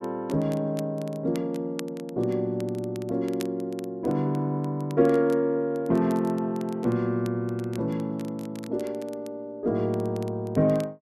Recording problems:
crackling; vinyl, SNR 23 dB

